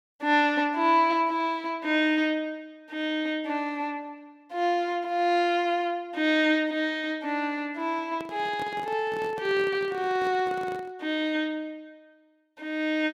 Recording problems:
handling noise; from 8 to 11 s; peak -9 dB vs average level

